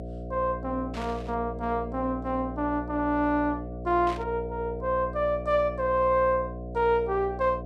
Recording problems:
hum; 60 Hz, harmonics up to 720 Hz, SNR 10 dB
static burst; at 1 s and at 4 s; peak -9 dB vs average level

